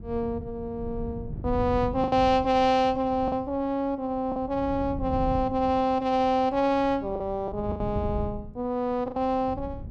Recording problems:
wind noise; below 150 Hz, SNR 12 dB
lost packets; 4% of the sound replaced, filled with the last packet

